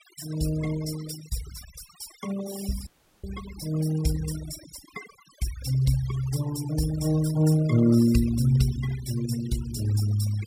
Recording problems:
denoising artefacts; signal-to-artefact ratio 15 dB
dropout; at 3 s

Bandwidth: 16 kHz